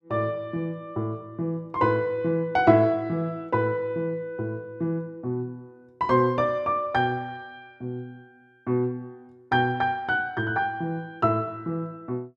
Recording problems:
none

